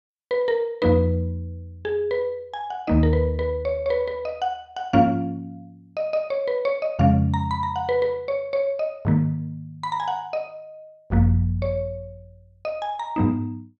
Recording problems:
none

